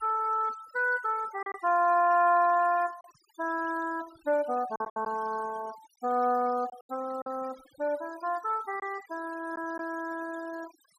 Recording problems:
denoising artefacts; signal-to-artefact ratio 22 dB
packet loss; 4% of the sound replaced, filled with silence

